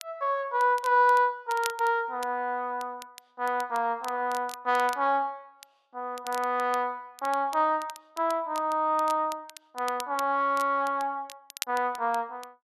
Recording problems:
crackling; vinyl, SNR 18 dB

